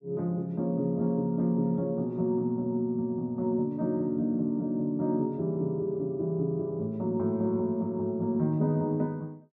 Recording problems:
none

